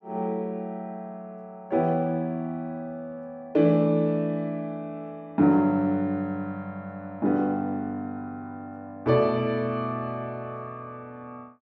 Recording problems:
none

